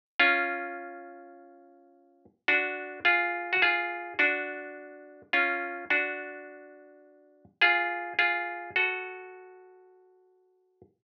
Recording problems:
treble cut off; nothing above 6.4 kHz

